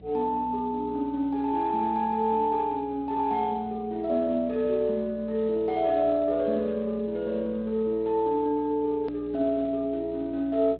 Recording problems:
treble cut off; nothing above 5.5 kHz
lossy codec; Speex, log-spectral distance 2 dB
hum; 60 Hz, harmonics up to 720 Hz, SNR 22 dB
edit click; at 9 s

